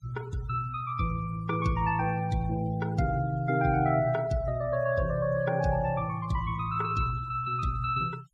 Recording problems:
denoising artefacts; signal-to-artefact ratio 21 dB

